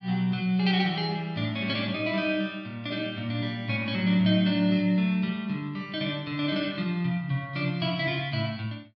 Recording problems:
none

